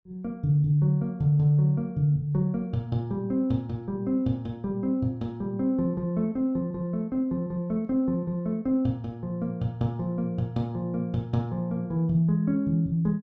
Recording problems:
none

